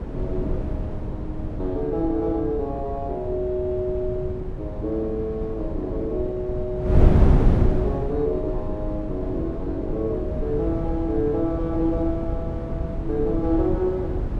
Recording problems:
wind on the microphone; below 170 Hz, SNR 0 dB

